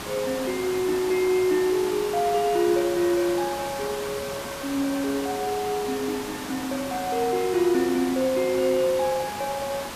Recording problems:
hiss; slope -3 dB per octave, SNR 9 dB

